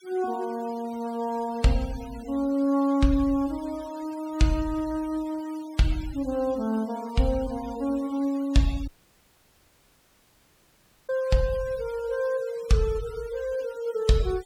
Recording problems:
noise reduction artefacts; signal-to-artefact ratio 21 dB
dropout; at 9 s for 2 s

